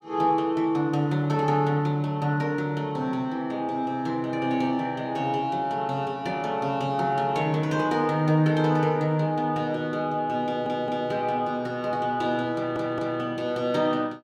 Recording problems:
stutter; at 10 s and at 13 s

